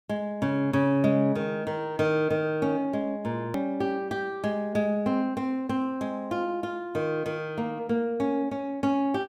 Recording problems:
click at an edit; at 3.5 s

